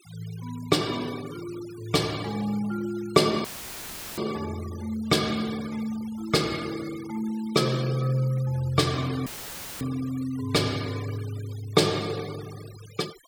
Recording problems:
noise reduction artefacts; signal-to-artefact ratio 17 dB
audio cutting out; at 3.5 s for 0.5 s and at 9.5 s for 0.5 s; filled with static

